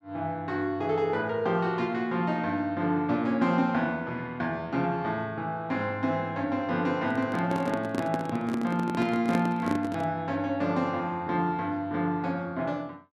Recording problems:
microphone handling noise; from 7 to 10 s; peak +3 dB vs average level

